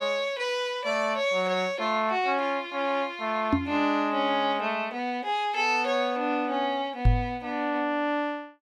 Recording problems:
knock on the microphone; at 3.5 s and at 7 s; peak +8 dB vs average level

